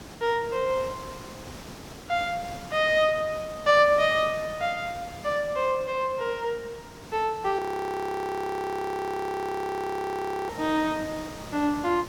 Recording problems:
hiss; slope -4 dB per octave, SNR 16 dB
audio freezing; at 7.5 s for 3 s

